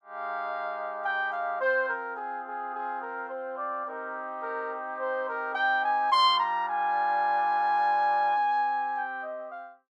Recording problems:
none

